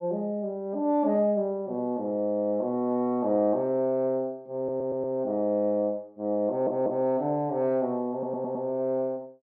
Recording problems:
stutter; at 4.5 s, at 6.5 s and at 8 s

